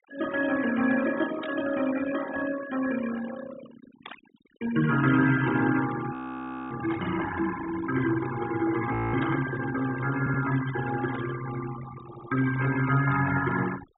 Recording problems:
treble cut off; nothing above 4 kHz
denoising artefacts; signal-to-artefact ratio 11 dB
burst of static; 5 times, first at 1.5 s; peak -10 dB vs average level
audio freezing; at 6 s for 0.5 s and at 9 s
audio stuttering; at 10 s and at 12 s

